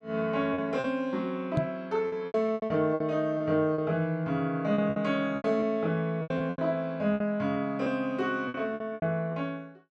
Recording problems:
packet loss; 12% of the sound replaced, filled with repeated pitch periods
microphone thump; at 1.5 s; peak +5 dB vs average level

